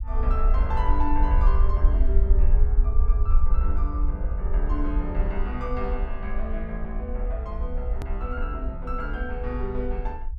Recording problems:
rumble; below 54 Hz, SNR -7 dB
hard cut with a click; at 8 s

